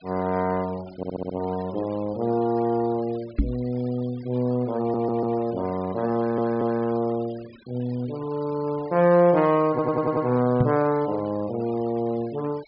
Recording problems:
treble cut off; nothing above 5.5 kHz
noise reduction artefacts; signal-to-artefact ratio 22 dB
audio stuttering; 4 times, first at 1 s
knock on the microphone; at 3.5 s and at 11 s; peak +6 dB vs average level

